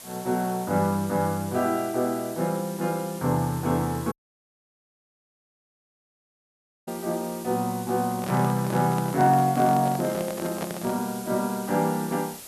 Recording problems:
background hiss; slope -1 dB per octave, SNR 15 dB
dropout; at 4 s for 3 s
microphone handling noise; from 8 to 11 s; peak -3 dB vs average level

